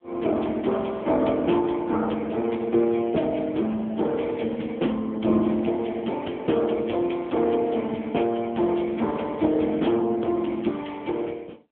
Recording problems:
phone line; 170 Hz to 3.4 kHz, AMR-NB

